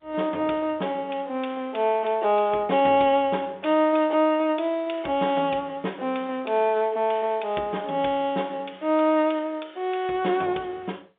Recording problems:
phone line; 190 Hz to 3.6 kHz, G.711

